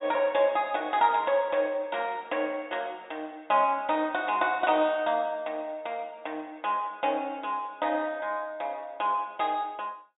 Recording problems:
treble missing; nothing above 4 kHz

